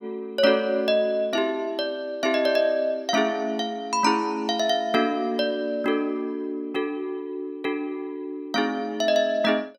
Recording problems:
none

